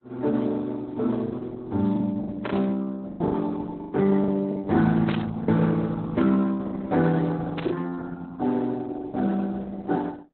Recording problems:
codec artefacts; Speex, then Opus, log-spectral distance 3 dB, nothing above 4 kHz
packet loss; 6% of the sound replaced, filled with the last packet
burst of static; at 2.5 s, at 5 s and at 7.5 s; peak 0 dB vs average level

